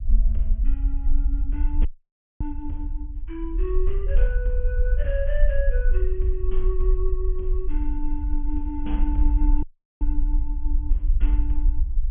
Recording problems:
treble missing; nothing above 3.3 kHz
rumble; below 46 Hz, strongest tone 20 Hz, SNR -8 dB
audio cutting out; at 2 s for 0.5 s and at 9.5 s

